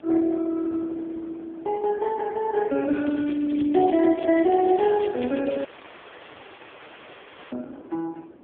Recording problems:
telephone audio; 240 Hz to 2.9 kHz, AMR-NB
wind noise; below 540 Hz, SNR 21 dB
crackle; from 3 to 5.5 s; loose cable, SNR 21 dB
dropout; at 5.5 s for 2 s

